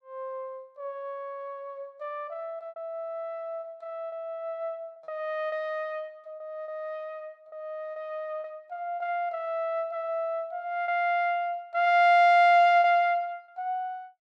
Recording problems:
packet loss; 4% of the sound replaced, filled with repeated pitch periods

